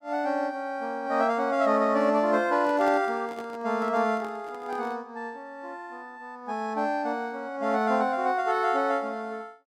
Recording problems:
microphone handling noise; from 2.5 to 5 s; peak -8 dB vs average level

